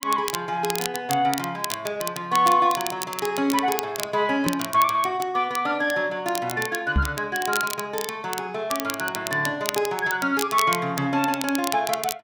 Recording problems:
crackle; vinyl, SNR 8 dB
microphone bump; at 4.5 s and at 7 s; peak +6 dB vs average level

